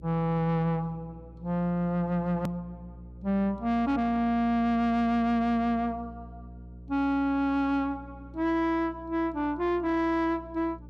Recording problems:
distorted audio; soft clipping, signal-to-distortion ratio 10 dB
electrical hum; 60 Hz, harmonics up to 540 Hz, SNR 19 dB
hard cut with a click; at 2.5 s

